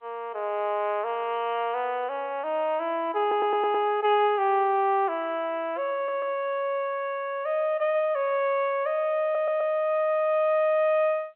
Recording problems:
telephone audio; 340 Hz to 3.3 kHz, G.711
audio stuttering; at 3 s, at 6 s and at 9 s

